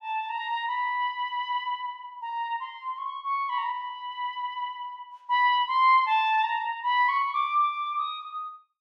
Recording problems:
none

